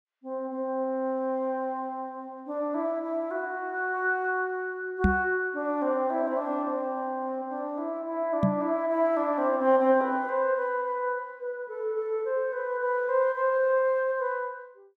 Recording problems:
microphone bump; at 5 s and at 8.5 s; peak +8 dB vs average level

